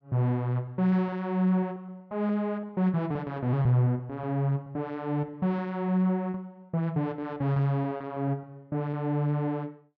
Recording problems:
packet loss; 7% of the sound replaced, filled with repeated pitch periods

